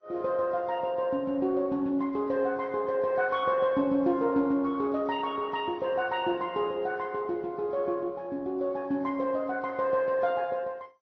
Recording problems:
codec artefacts; MP2, then AAC, log-spectral distance 2 dB, nothing above 6 kHz

